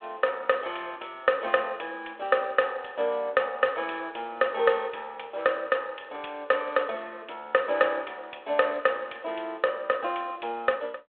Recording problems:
telephone audio; 340 Hz to 3.5 kHz, G.726

